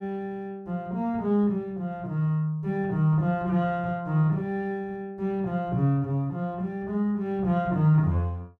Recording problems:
none

